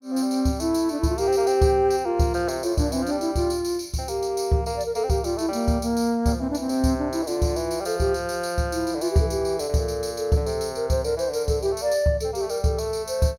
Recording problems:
none

